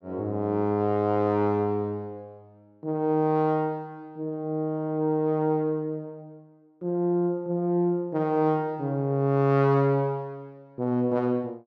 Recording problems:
none

